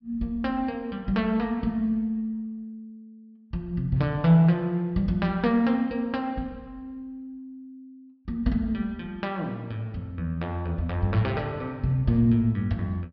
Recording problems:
treble cut off; nothing above 5.5 kHz

